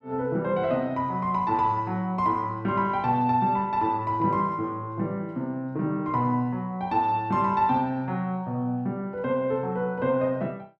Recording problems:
none

